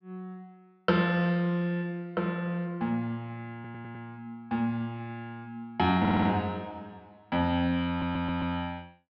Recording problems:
treble cut off; nothing above 5.5 kHz
stutter; at 3.5 s, at 6 s and at 8 s

